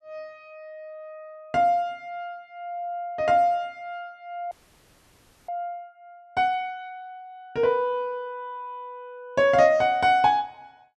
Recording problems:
audio freezing; at 4.5 s for 1 s

